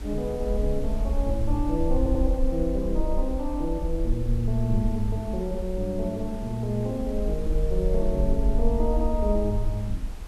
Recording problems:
background hiss; slope -5 dB per octave, SNR 18 dB
rumble; below 50 Hz, SNR 2 dB
stutter; at 2 s

